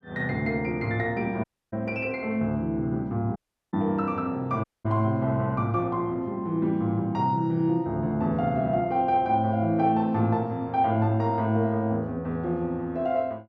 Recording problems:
audio cutting out; at 1.5 s, at 3.5 s and at 4.5 s

